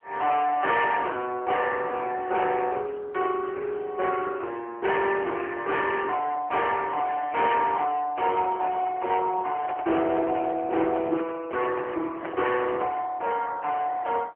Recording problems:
phone line; 300 Hz to 3.2 kHz, AMR-NB
distorted audio; hard clipping, uneven, signal-to-distortion ratio 12 dB
handling noise; from 9.5 to 13 s; peak -4 dB vs average level

